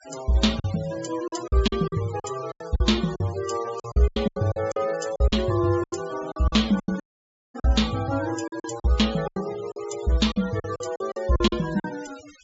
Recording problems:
treble missing; nothing above 8 kHz
denoising artefacts; signal-to-artefact ratio 17 dB
packet loss; 15% of the sound replaced, filled with silence
dropout; at 7 s for 0.5 s

